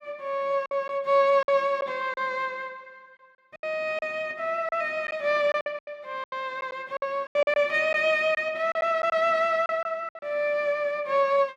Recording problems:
lost packets; 9% of the sound replaced, filled with silence

